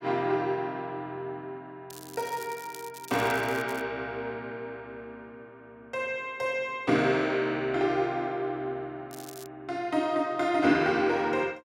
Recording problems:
crackle; from 2 to 4 s and at 9 s; loose cable, SNR 17 dB

